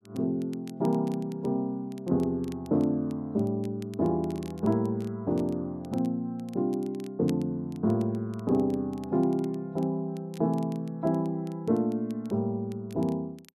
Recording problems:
crackle; vinyl, SNR 27 dB

